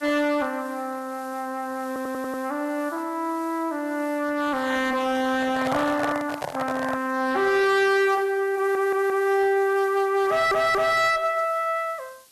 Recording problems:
lossy codec; AAC, log-spectral distance 2 dB, nothing above 13.1 kHz
distorted audio; hard clipping, uneven, signal-to-distortion ratio 11 dB
background hiss; slope +1 dB per octave, SNR 25 dB
stutter; at 2 s, at 8.5 s and at 10 s
microphone handling noise; from 5.5 to 7 s; peak -1 dB vs average level

